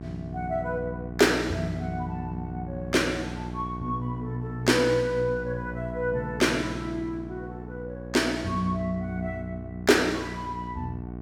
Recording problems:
hum; 60 Hz, harmonics up to 1.1 kHz, SNR 9 dB

